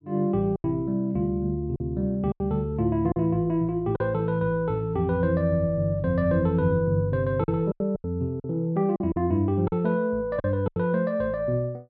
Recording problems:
packet loss; 6% of the sound replaced, filled with silence

